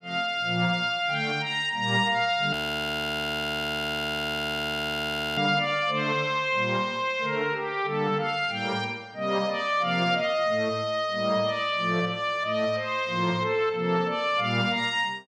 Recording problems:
frozen audio; at 2.5 s for 3 s

